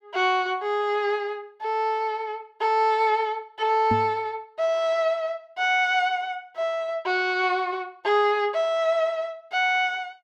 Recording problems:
microphone thump; at 4 s; peak 0 dB vs average level

